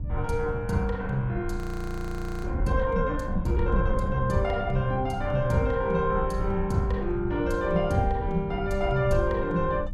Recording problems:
hum; 50 Hz, harmonics up to 900 Hz, SNR 16 dB
rumble; below 80 Hz, SNR 7 dB
frozen audio; at 1.5 s for 1 s

